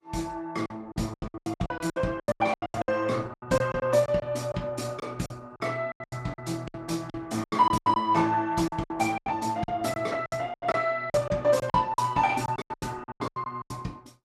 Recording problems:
codec artefacts; Opus, log-spectral distance 3 dB, nothing above 14.3 kHz
packet loss; 19% of the sound replaced, filled with silence

